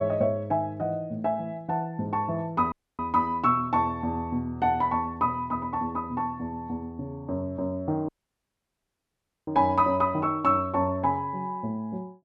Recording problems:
dropout; at 2.5 s and at 8 s for 1.5 s

